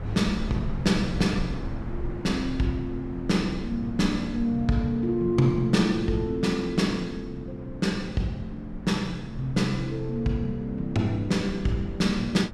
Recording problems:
rumble; below 120 Hz, SNR 12 dB

